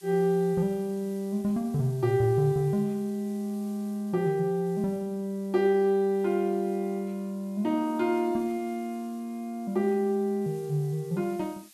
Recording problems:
hiss; slope +4 dB per octave, SNR 26 dB

